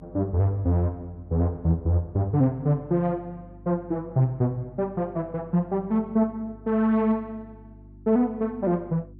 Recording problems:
hum; 50 Hz, harmonics up to 350 Hz, SNR 23 dB

